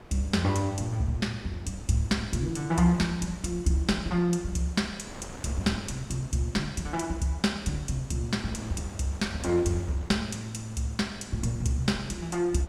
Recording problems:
wind noise; below 930 Hz, SNR 17 dB

